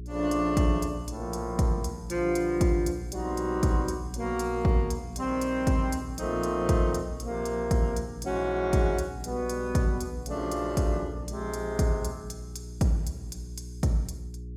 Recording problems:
hum; 60 Hz, harmonics up to 420 Hz, SNR 12 dB

